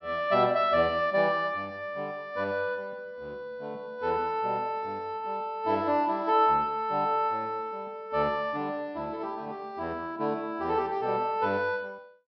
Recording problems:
treble cut off; nothing above 5.5 kHz

